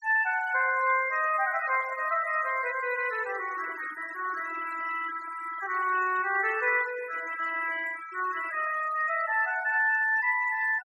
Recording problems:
denoising artefacts; signal-to-artefact ratio 16 dB

